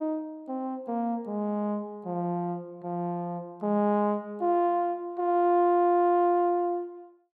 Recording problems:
none

